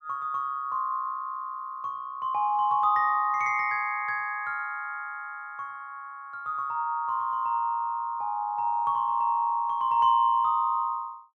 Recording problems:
none

